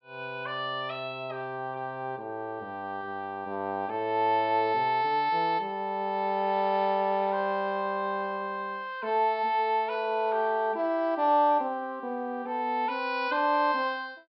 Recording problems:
treble cut off; nothing above 5.4 kHz

